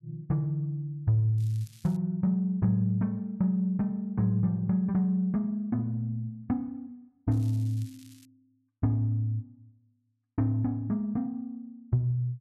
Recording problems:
crackle; at 1.5 s and at 7.5 s; loose cable, SNR 27 dB

